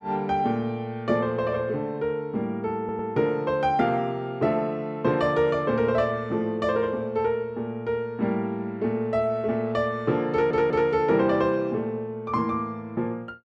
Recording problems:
stutter; at 3 s and at 10 s

